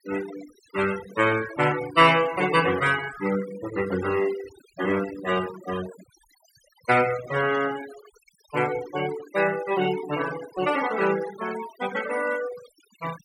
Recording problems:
denoising artefacts; signal-to-artefact ratio 13 dB

